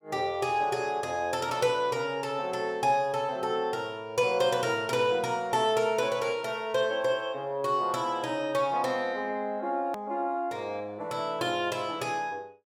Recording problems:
hard cut with a click; at 10 s

